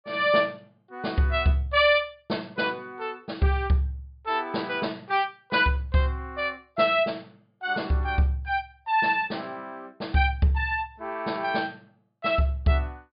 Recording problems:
treble cut off; nothing above 5 kHz

